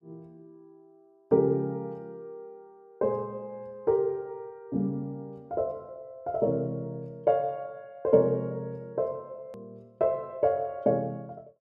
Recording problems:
edit click; at 9.5 s

